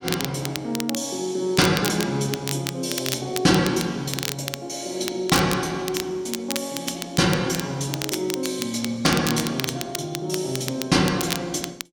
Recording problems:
crackle; vinyl, SNR 7 dB

